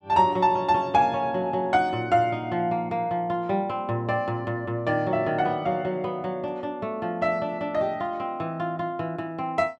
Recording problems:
none

